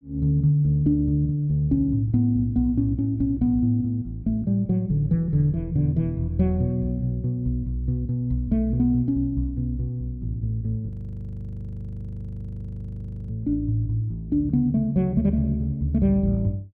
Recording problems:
audio freezing; at 11 s for 2.5 s

